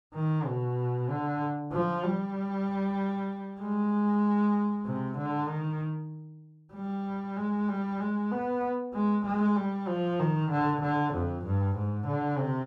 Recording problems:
none

